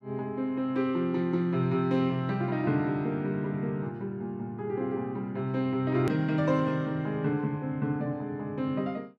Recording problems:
edit click; at 6 s

